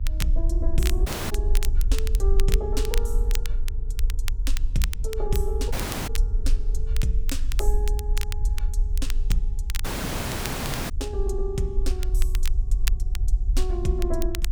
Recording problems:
hum; 50 Hz, harmonics up to 1.2 kHz, SNR 26 dB
low-frequency rumble; below 48 Hz, strongest tone 24 Hz, SNR -4 dB
crackle; vinyl, SNR 7 dB
audio cutting out; at 1 s, at 5.5 s and at 10 s for 1 s

